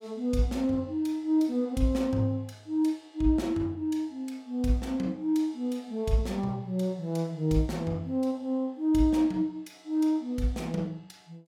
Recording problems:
none

